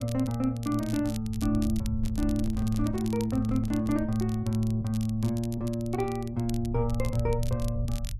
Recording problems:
low-frequency rumble; below 74 Hz, SNR 10 dB
crackle; vinyl, SNR 18 dB
handling noise; from 2 to 4 s; peak -9 dB vs average level

